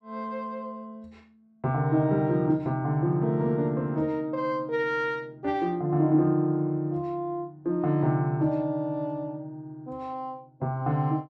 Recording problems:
none

